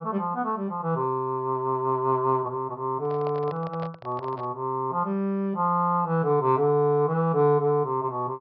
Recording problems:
treble missing; nothing above 5.5 kHz
handling noise; from 3 to 4.5 s; peak -9 dB vs average level

